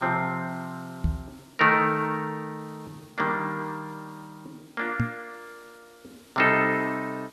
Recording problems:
hiss; slope -2 dB per octave, SNR 29 dB
microphone thump; at 1 s and at 5 s; peak +3 dB vs average level

